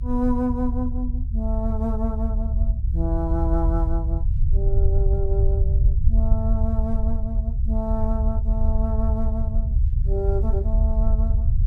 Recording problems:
rumble; below 68 Hz, SNR -6 dB

